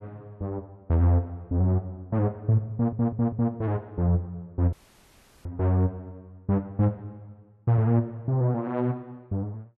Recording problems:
audio stuttering; at 2.5 s
dropout; at 4.5 s for 0.5 s

